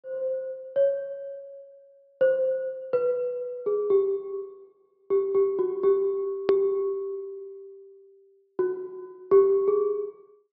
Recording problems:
low-pass filter; nothing above 5.5 kHz
click at an edit; at 6.5 s

